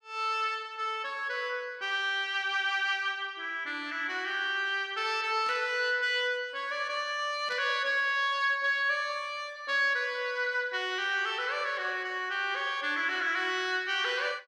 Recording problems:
burst of static; at 5.5 s and at 7.5 s; peak -12 dB vs average level

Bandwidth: 14.5 kHz